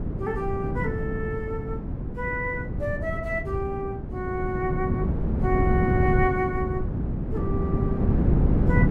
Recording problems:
wind on the microphone; below 220 Hz, SNR -2 dB

